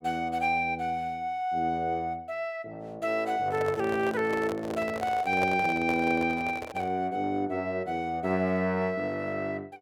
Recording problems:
microphone handling noise; from 3.5 to 7 s; peak -1 dB vs average level

